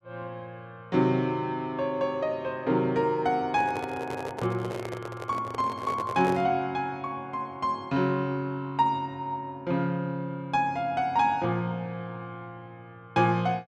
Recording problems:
handling noise; from 3.5 to 6.5 s; peak -2 dB vs average level

